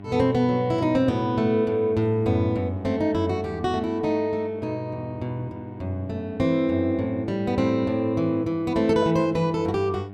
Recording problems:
electrical hum; 50 Hz, harmonics up to 1.1 kHz, SNR 16 dB

